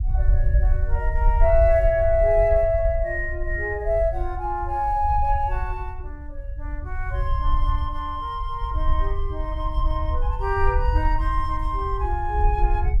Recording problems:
rumble; below 62 Hz, SNR 2 dB

